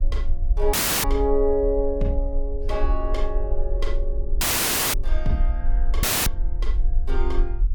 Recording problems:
rumble; below 44 Hz, strongest tone 20 Hz, SNR 0 dB
dropout; at 0.5 s, at 4.5 s for 0.5 s and at 6 s

